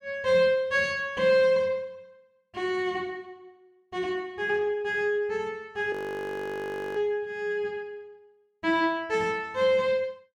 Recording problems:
frozen audio; at 6 s for 1 s

